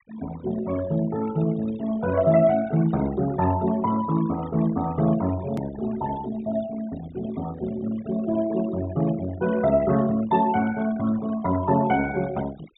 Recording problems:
treble missing; nothing above 4 kHz
noise reduction artefacts; signal-to-artefact ratio 16 dB
hard cut with a click; at 5.5 s

